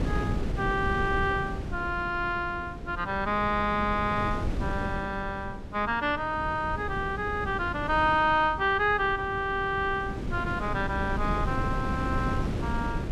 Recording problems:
wind on the microphone; below 260 Hz, SNR 6 dB

